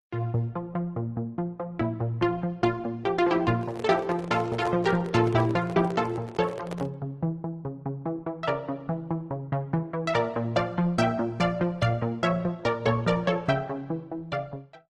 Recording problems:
lossy compression; MP3, then Opus, log-spectral distance 2 dB
microphone handling noise; from 3.5 to 7 s; peak -4 dB vs average level

